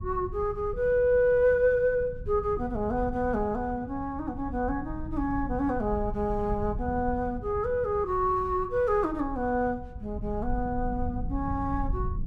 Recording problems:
low-frequency rumble; below 100 Hz, SNR 11 dB

